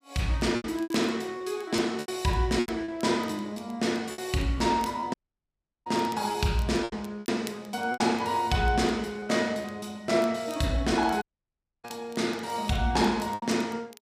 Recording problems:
crackling; vinyl, SNR 24 dB
packet loss; 8% of the sound replaced, filled with repeated pitch periods
dropout; at 5 s for 0.5 s and at 11 s for 0.5 s

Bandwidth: 15 kHz